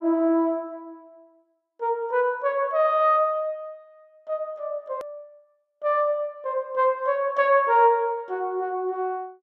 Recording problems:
click at an edit; at 5 s

